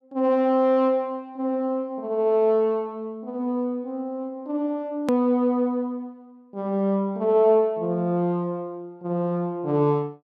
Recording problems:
edit click; at 5 s

